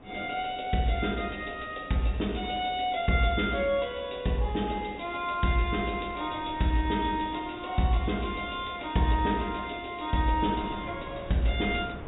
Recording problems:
treble missing; nothing above 4 kHz
wind noise; below 490 Hz, SNR 20 dB

